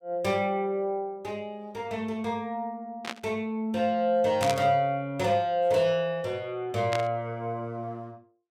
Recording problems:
static burst; at 3 s, at 4.5 s and at 7 s; peak +1 dB vs average level

